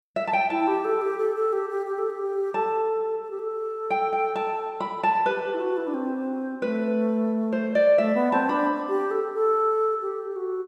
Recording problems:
none

